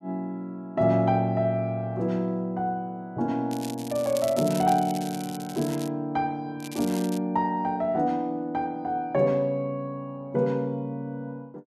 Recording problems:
crackle; from 3.5 to 6 s and at 6.5 s; loose cable, SNR 14 dB

